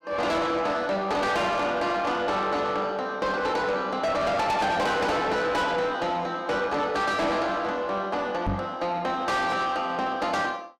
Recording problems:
distorted audio; soft clipping, signal-to-distortion ratio 8 dB
microphone bump; at 8.5 s; peak +2 dB vs average level

